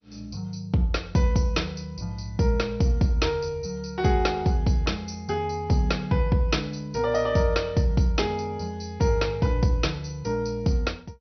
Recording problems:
lossy compression; MP2, log-spectral distance 4 dB, nothing above 6 kHz

